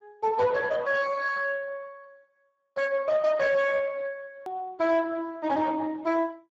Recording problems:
lossy compression; Speex, log-spectral distance 3 dB
distorted audio; soft clipping, signal-to-distortion ratio 11 dB
edit click; at 4.5 s

